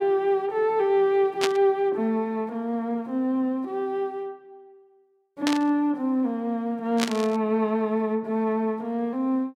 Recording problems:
burst of static; at 1.5 s, at 5.5 s and at 7 s; peak +3 dB vs average level

